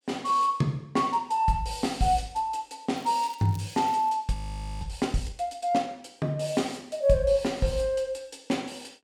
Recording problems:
crackling; from 3 to 4 s; loose cable, SNR 25 dB
frozen audio; at 4.5 s

